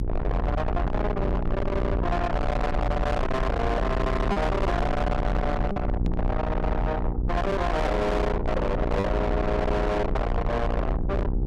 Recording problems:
distorted audio; soft clipping, signal-to-distortion ratio 6 dB
hum; 60 Hz, harmonics up to 900 Hz, SNR 10 dB
low-frequency rumble; below 630 Hz, SNR 2 dB
lost packets; 1.1% of the sound replaced, filled with repeated pitch periods
microphone bump; at 6 s; peak +1 dB vs average level

